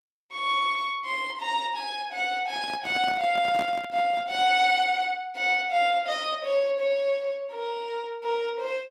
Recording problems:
lossy compression; Opus, log-spectral distance 2 dB
microphone handling noise; from 2.5 to 4.5 s; peak -6 dB vs average level

